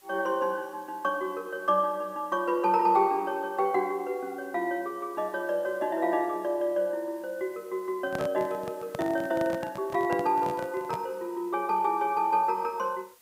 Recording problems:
hiss; slope 0 dB per octave, SNR 27 dB
handling noise; from 8 to 11 s; peak -3 dB vs average level

